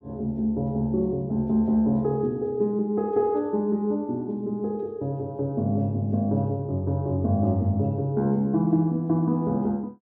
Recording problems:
none

